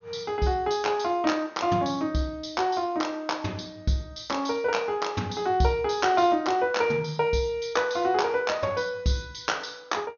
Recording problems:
treble cut off; nothing above 6.7 kHz

